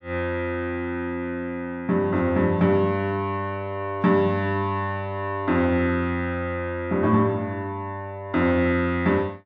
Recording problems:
none

